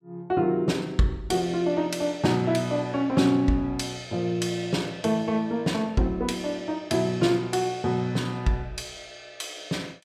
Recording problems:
none

